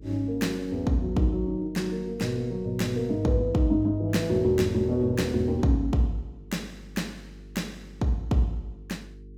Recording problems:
hum; 50 Hz, harmonics up to 450 Hz, SNR 20 dB

